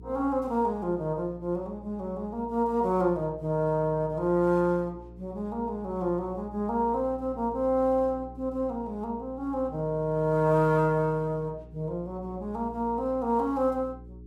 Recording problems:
electrical hum; 60 Hz, harmonics up to 420 Hz, SNR 19 dB

